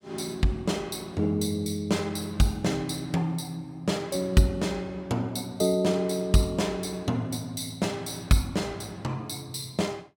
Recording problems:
none

